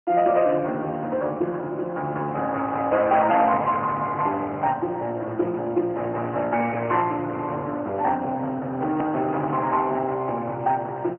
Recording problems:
phone line; 260 Hz to 3.2 kHz, Speex
distorted audio; hard clipping, uneven, signal-to-distortion ratio 14 dB
click at an edit; at 9 s

